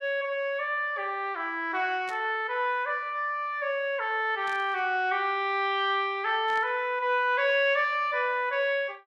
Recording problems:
burst of static; at 2 s, at 4.5 s and at 6.5 s; peak -13 dB vs average level

